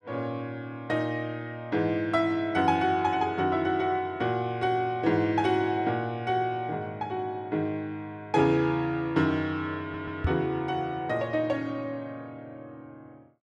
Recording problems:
stutter; at 10 s
microphone bump; at 10 s; peak +4 dB vs average level

